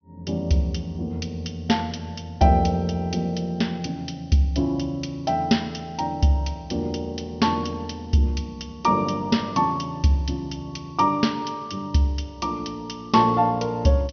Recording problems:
treble cut off; nothing above 6.1 kHz

